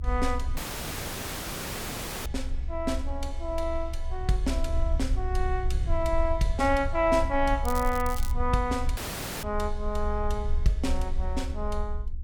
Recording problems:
rumble; below 66 Hz, strongest tone 20 Hz, SNR 3 dB
audio cutting out; at 0.5 s for 1.5 s and at 9 s
crackling; at 7.5 s; loose cable, SNR 12 dB

